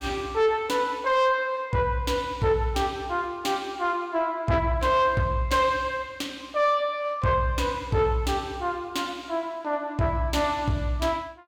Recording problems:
distortion; soft clipping, signal-to-distortion ratio 12 dB

